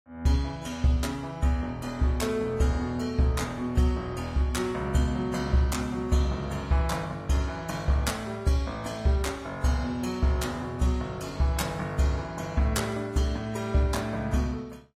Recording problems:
lossy compression; AAC, log-spectral distance 2 dB

